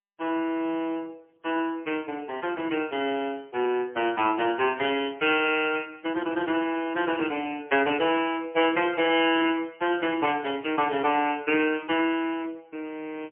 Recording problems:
telephone audio; 240 Hz to 3.2 kHz, AMR-NB, then MP3

